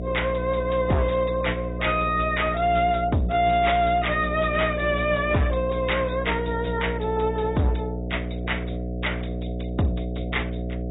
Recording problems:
treble missing; nothing above 3.8 kHz
lossy compression; AAC, log-spectral distance 6 dB
distorted audio; hard clipping, signal-to-distortion ratio 8 dB
hum; 60 Hz, harmonics up to 720 Hz, SNR 6 dB

